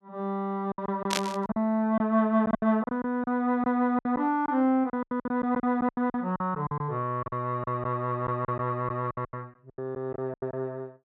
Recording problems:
packet loss; 14% of the sound replaced, filled with silence
static burst; at 1 s; peak +5 dB vs average level

